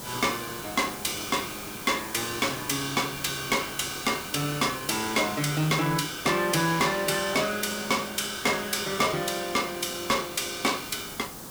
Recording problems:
distortion; soft clipping, signal-to-distortion ratio 7 dB
hiss; SNR 11 dB

